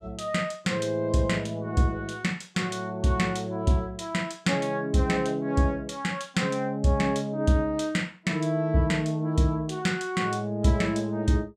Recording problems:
none

